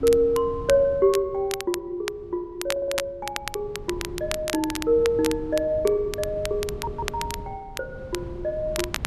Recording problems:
wind on the microphone; below 180 Hz, SNR 15 dB
crackling; vinyl, SNR 10 dB
stutter; at 2.5 s and at 6.5 s

